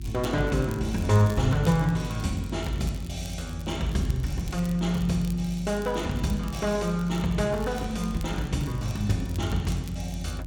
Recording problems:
hum; 50 Hz, harmonics up to 350 Hz, SNR 10 dB
crackling; vinyl, SNR 21 dB

